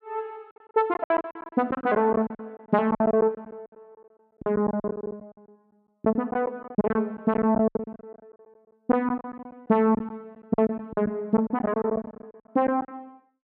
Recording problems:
packet loss; 18% of the sound replaced, filled with silence

